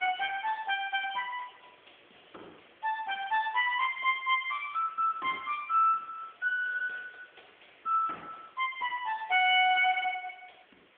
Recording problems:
phone line; 300 Hz to 3.5 kHz, AMR-NB
background hiss; SNR 30 dB

